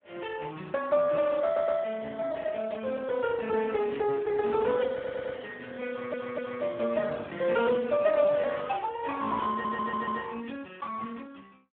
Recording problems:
telephone audio; 170 Hz to 3.8 kHz, Speex
stutter; 4 times, first at 1.5 s

